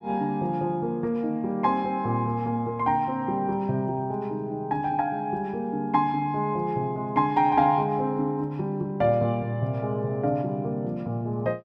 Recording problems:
none

